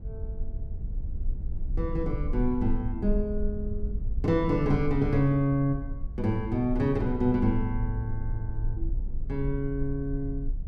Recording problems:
rumble; below 58 Hz, strongest tone 22 Hz, SNR 7 dB

